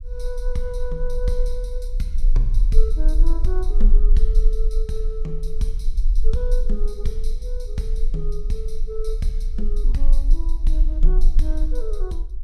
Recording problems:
rumble; below 34 Hz, strongest tone 20 Hz, SNR -8 dB

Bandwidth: 14.5 kHz